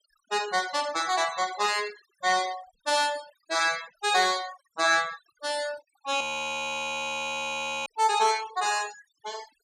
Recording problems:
noise reduction artefacts; signal-to-artefact ratio 17 dB
frozen audio; at 6 s for 1.5 s

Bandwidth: 14.5 kHz